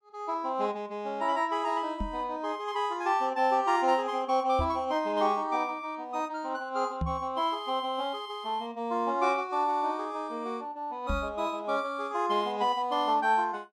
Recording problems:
microphone thump; 4 times, first at 2 s; peak +1 dB vs average level

